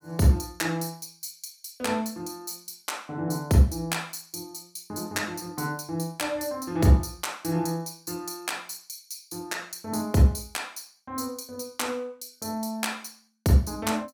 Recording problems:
none

